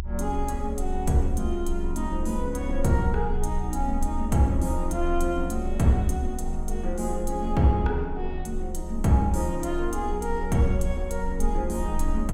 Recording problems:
rumble; below 66 Hz, strongest tone 24 Hz, SNR 6 dB

